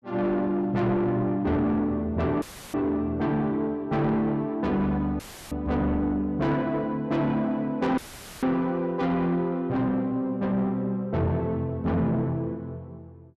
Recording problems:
distortion; soft clipping, signal-to-distortion ratio 11 dB
dropout; at 2.5 s, at 5 s and at 8 s; filled with static

